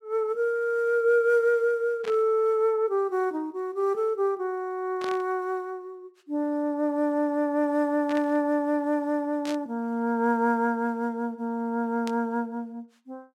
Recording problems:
static burst; 5 times, first at 2 s; peak -8 dB vs average level

